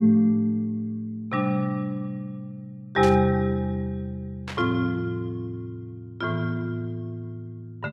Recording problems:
static burst; at 3 s and at 4.5 s; peak -5 dB vs average level

